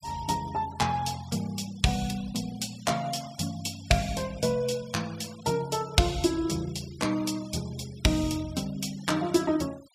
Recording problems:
noise reduction artefacts; signal-to-artefact ratio 19 dB

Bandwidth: 15 kHz